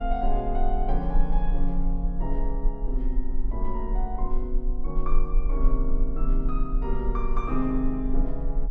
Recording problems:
rumble; below 34 Hz, strongest tone 22 Hz, SNR -2 dB
wind noise; below 320 Hz, SNR 20 dB

